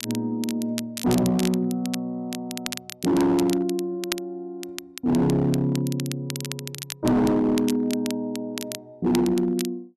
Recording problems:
distortion; hard clipping, signal-to-distortion ratio 11 dB
crackling; vinyl, SNR 12 dB

